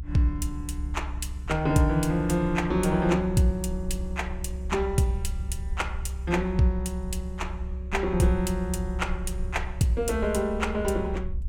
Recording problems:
rumble; below 68 Hz, strongest tone 66 Hz, SNR 7 dB

